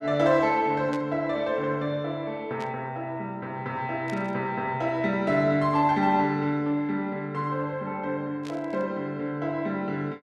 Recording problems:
burst of static; 4 times, first at 1 s; peak -10 dB vs average level

